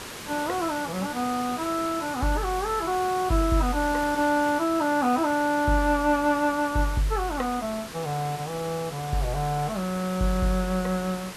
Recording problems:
background hiss; slope -2 dB per octave, SNR 12 dB

